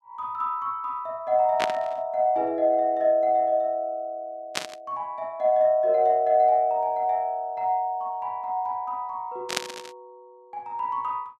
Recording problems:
burst of static; at 1.5 s, at 4.5 s and at 9.5 s; peak +4 dB vs average level

